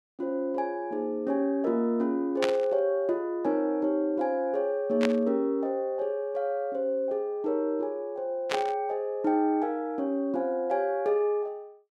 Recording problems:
static burst; at 2.5 s, at 5 s and at 8.5 s; peak +3 dB vs average level

